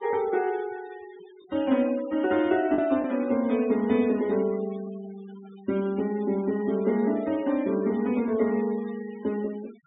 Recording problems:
treble cut off; nothing above 3.7 kHz
noise reduction artefacts; signal-to-artefact ratio 21 dB
packet loss; 0.6% of the sound replaced, filled with the last packet

